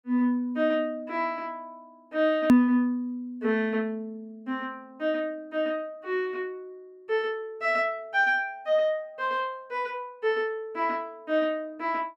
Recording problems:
edit click; at 2.5 s

